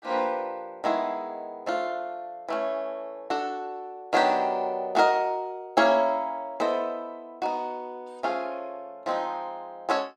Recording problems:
none

